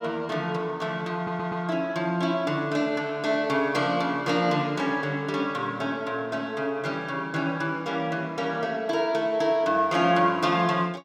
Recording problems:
audio stuttering; at 1 s

